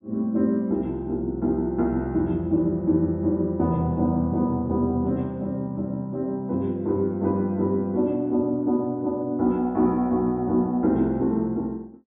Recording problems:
treble cut off; nothing above 4 kHz

